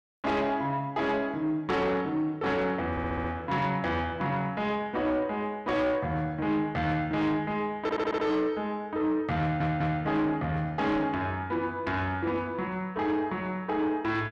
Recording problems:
distorted audio; soft clipping, signal-to-distortion ratio 11 dB
audio stuttering; at 3 s, at 8 s and at 9.5 s

